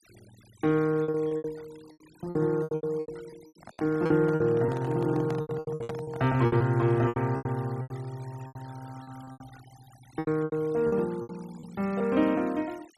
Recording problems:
denoising artefacts; signal-to-artefact ratio 25 dB
lost packets; 17% of the sound replaced, filled with repeated pitch periods
handling noise; from 3.5 to 6.5 s; peak -7 dB vs average level

